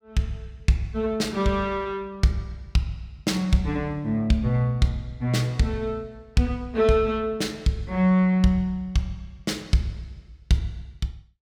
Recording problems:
none

